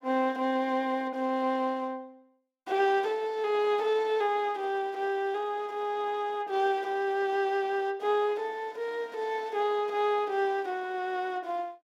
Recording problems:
none

